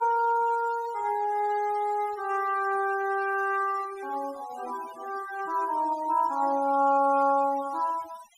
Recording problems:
noise reduction artefacts; signal-to-artefact ratio 19 dB

